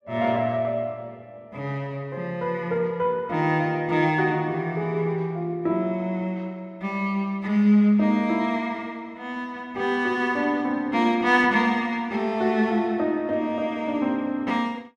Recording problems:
none

